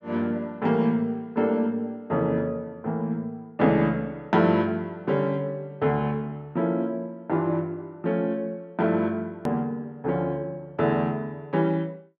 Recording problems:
hard cut with a click; at 9.5 s

